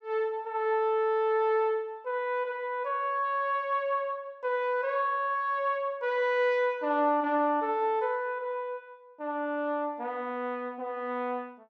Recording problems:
none

